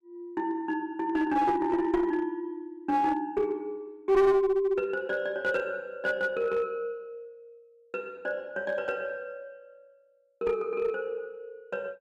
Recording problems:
distorted audio; hard clipping, uneven, signal-to-distortion ratio 10 dB

